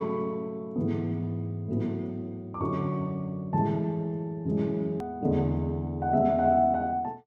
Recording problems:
hard cut with a click; at 5 s

